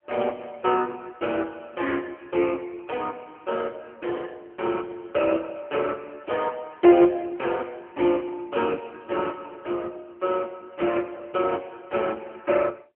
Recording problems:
telephone audio; 260 Hz to 3.1 kHz, AMR-NB

